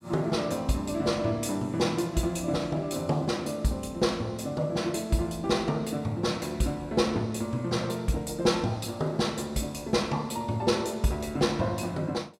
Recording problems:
none

